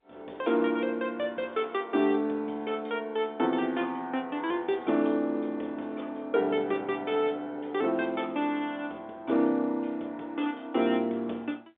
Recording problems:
telephone audio; 190 Hz to 3.6 kHz, G.711

